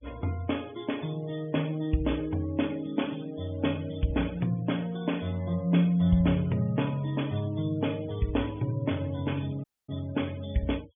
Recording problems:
treble cut off; nothing above 3.5 kHz
noise reduction artefacts; signal-to-artefact ratio 22 dB
audio cutting out; at 9.5 s

